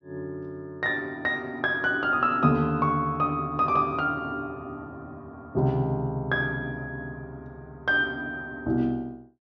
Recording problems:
treble cut off; nothing above 6.4 kHz

